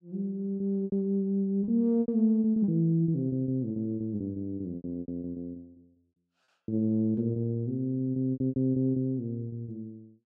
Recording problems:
packet loss; 15% of the sound replaced, filled with repeated pitch periods

